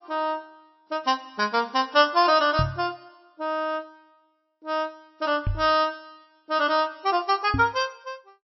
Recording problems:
lossy codec; MP3, log-spectral distance 3 dB, nothing above 5.7 kHz
microphone bump; at 2.5 s, at 5.5 s and at 7.5 s; peak +2 dB vs average level

